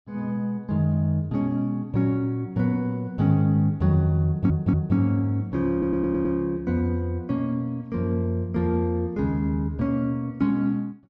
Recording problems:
stutter; at 4.5 s and at 5.5 s

